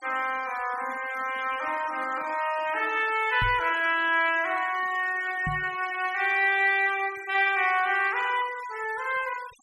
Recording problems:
denoising artefacts; signal-to-artefact ratio 19 dB
microphone thump; at 3.5 s and at 5.5 s; peak -3 dB vs average level

